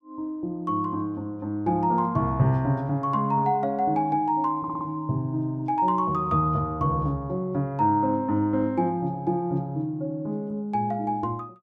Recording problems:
stutter; at 4.5 s

